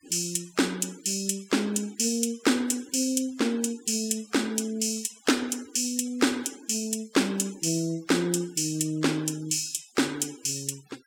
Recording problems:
noise reduction artefacts; signal-to-artefact ratio 23 dB

